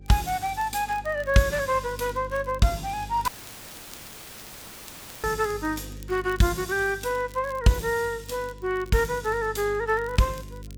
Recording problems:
electrical hum; 50 Hz, harmonics up to 550 Hz, SNR 17 dB
crackle; vinyl, SNR 25 dB
audio cutting out; at 3.5 s for 2 s; filled with static

